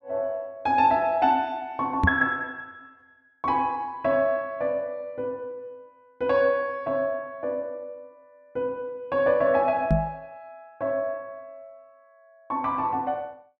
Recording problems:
microphone thump; at 2 s and at 10 s; peak +6 dB vs average level

